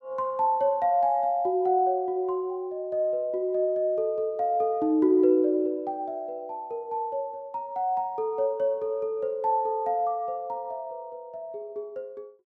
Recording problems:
none

